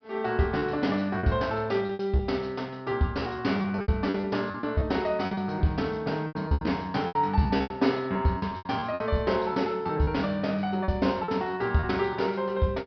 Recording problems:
low-pass filter; nothing above 5.5 kHz
packet loss; 12% of the sound replaced, filled with repeated pitch periods

